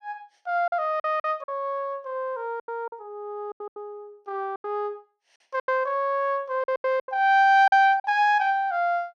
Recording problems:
packet loss; 11% of the sound replaced, filled with silence

